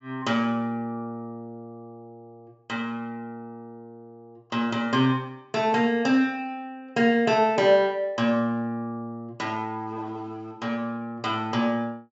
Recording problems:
treble cut off; nothing above 8 kHz

